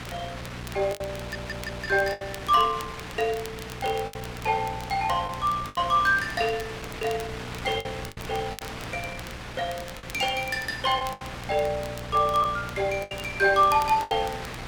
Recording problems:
hum; 60 Hz, harmonics up to 720 Hz, SNR 16 dB
wind on the microphone; below 3 kHz, SNR 12 dB
crackle; vinyl, SNR 20 dB
lost packets; 7% of the sound replaced, filled with the last packet
stutter; at 1 s

